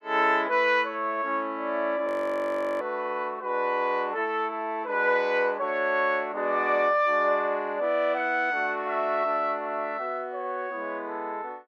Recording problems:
audio freezing; at 2 s for 0.5 s

